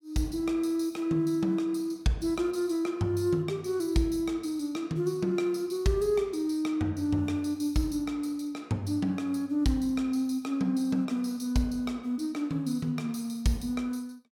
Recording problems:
none

